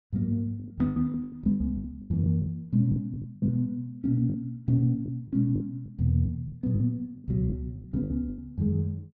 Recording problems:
packet loss; 14% of the sound replaced, filled with the last packet

